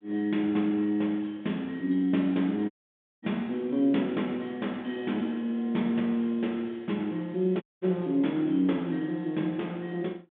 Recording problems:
telephone audio; 130 Hz to 3.6 kHz, G.726
audio cutting out; at 2.5 s for 0.5 s and at 7.5 s

